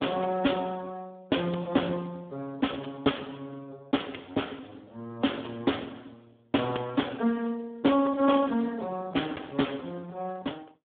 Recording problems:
phone line; 190 Hz to 3.5 kHz, Speex

